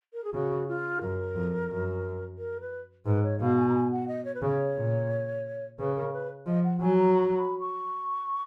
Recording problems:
none

